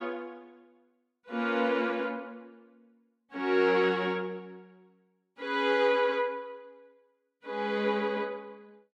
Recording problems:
none

